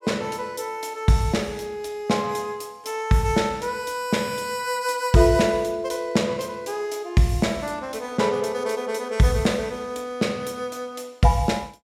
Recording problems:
none

